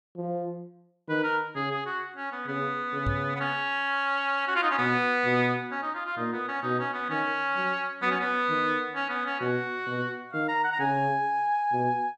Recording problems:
microphone bump; at 3 s; peak +1 dB vs average level

